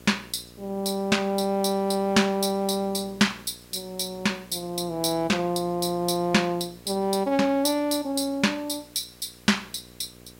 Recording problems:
mains hum; 60 Hz, harmonics up to 1.3 kHz, SNR 25 dB
background hiss; slope -1 dB per octave, SNR 27 dB

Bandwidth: 16 kHz